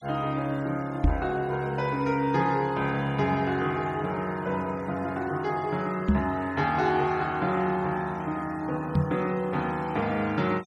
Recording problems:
denoising artefacts; signal-to-artefact ratio 23 dB
knock on the microphone; at 1 s, at 6 s and at 9 s; peak +8 dB vs average level

